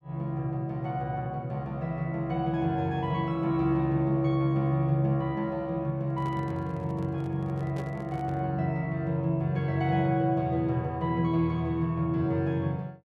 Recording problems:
handling noise; from 6 to 8.5 s; peak -7 dB vs average level

